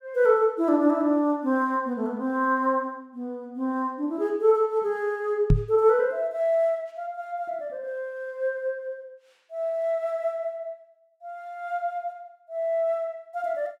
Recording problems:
microphone bump; at 5.5 s; peak +9 dB vs average level

